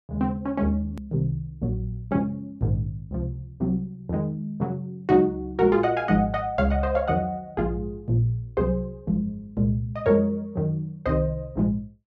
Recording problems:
hard cut with a click; at 1 s

